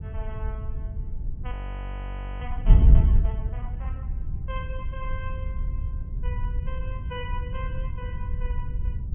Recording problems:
treble cut off; nothing above 3.2 kHz
wind on the microphone; below 80 Hz, SNR -13 dB
audio freezing; at 1.5 s for 1 s

